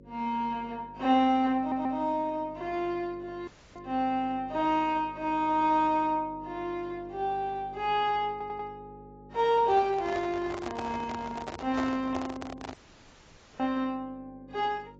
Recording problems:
lossy codec; AAC, log-spectral distance 3 dB
hum; 50 Hz, harmonics up to 550 Hz, SNR 22 dB
audio stuttering; at 1.5 s and at 8.5 s
dropout; at 3.5 s and at 13 s for 1 s
microphone handling noise; from 9.5 to 13 s; peak -1 dB vs average level

